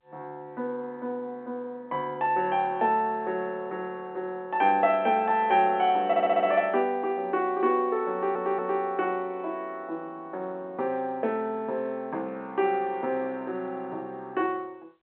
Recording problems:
telephone audio; 240 Hz to 3.5 kHz, G.711
stutter; at 6 s and at 8 s

